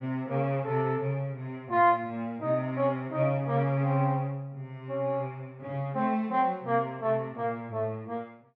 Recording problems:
none

